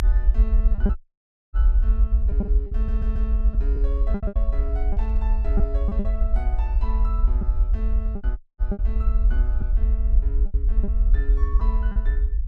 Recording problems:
low-frequency rumble; below 54 Hz, SNR -15 dB
lost packets; 7% of the sound replaced, filled with repeated pitch periods
audio cutting out; at 1 s for 0.5 s and at 8.5 s
audio stuttering; at 3 s
static burst; at 5 s; peak -20 dB vs average level

